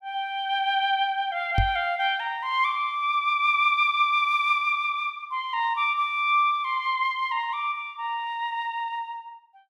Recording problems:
knock on the microphone; at 1.5 s; peak +3 dB vs average level

